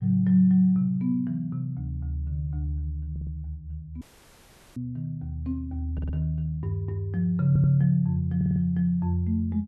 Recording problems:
stutter; 4 times, first at 3 s
audio cutting out; at 4 s for 1 s

